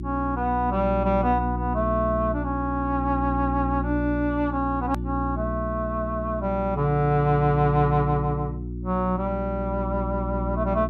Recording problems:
hum; 60 Hz, harmonics up to 360 Hz, SNR 5 dB
edit click; at 5 s

